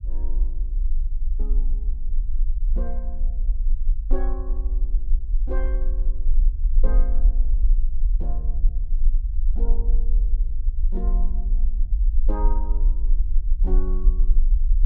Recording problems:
low-frequency rumble; below 40 Hz, strongest tone 20 Hz, SNR -13 dB

